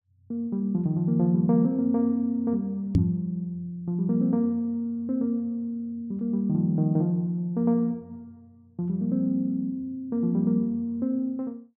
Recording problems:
microphone bump; at 3 s; peak +9 dB vs average level

